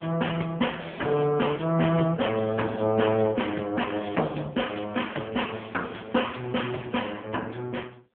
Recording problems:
telephone audio; 240 Hz to 3.3 kHz, AMR-NB
crackle; from 4.5 to 7 s; loose cable, SNR 23 dB

